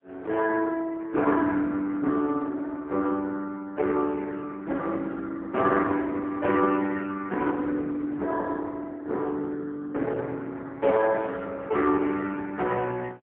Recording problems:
telephone audio; 220 Hz to 3.4 kHz, AMR-NB, then MP3

